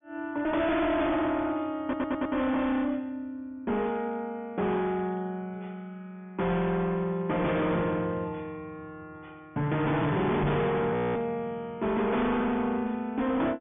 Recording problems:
treble missing; nothing above 3.5 kHz
distorted audio; hard clipping, signal-to-distortion ratio 7 dB
audio stuttering; at 2 s
microphone bump; at 10 s; peak +5 dB vs average level
frozen audio; at 11 s

